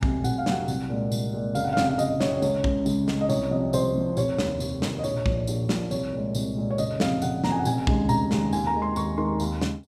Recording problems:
none

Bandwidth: 15 kHz